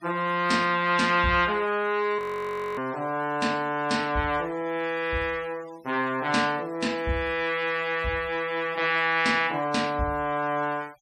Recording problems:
denoising artefacts; signal-to-artefact ratio 24 dB
audio freezing; at 2 s for 0.5 s

